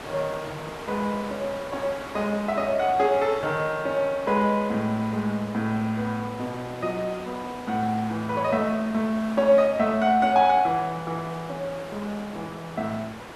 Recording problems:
hiss; SNR 14 dB

